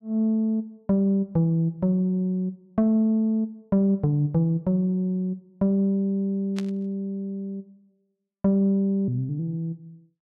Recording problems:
burst of static; at 6.5 s; peak -9 dB vs average level

